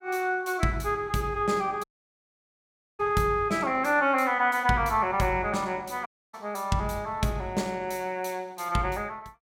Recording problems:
audio cutting out; at 2 s for 1 s and at 6 s

